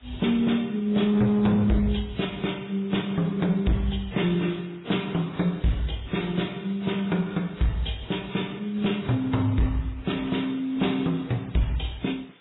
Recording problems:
lossy codec; MP3, then AAC, log-spectral distance 6 dB, nothing above 3.7 kHz
distorted audio; hard clipping, signal-to-distortion ratio 11 dB
hiss; SNR 29 dB

